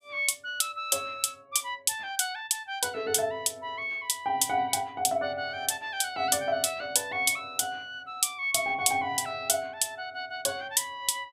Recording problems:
none

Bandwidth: 15.5 kHz